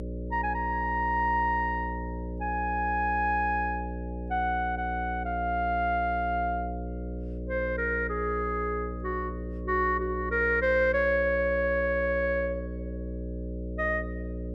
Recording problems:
hum; 60 Hz, harmonics up to 600 Hz, SNR 8 dB

